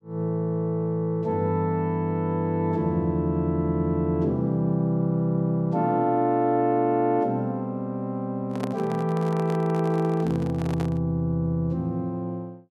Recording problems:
handling noise; from 8.5 to 11 s; peak -4 dB vs average level

